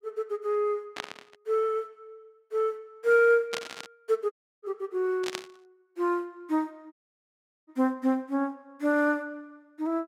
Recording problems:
burst of static; at 1 s, at 3.5 s and at 5 s; peak -1 dB vs average level
audio cutting out; at 4.5 s and at 7 s for 1 s

